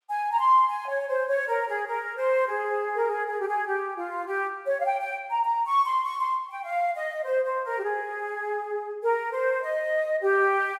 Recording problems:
none

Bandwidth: 16 kHz